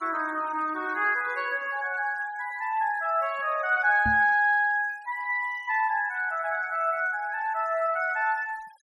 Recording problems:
denoising artefacts; signal-to-artefact ratio 27 dB
knock on the microphone; at 4 s; peak -3 dB vs average level

